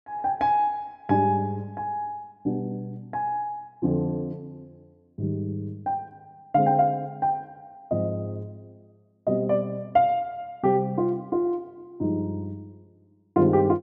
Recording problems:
none

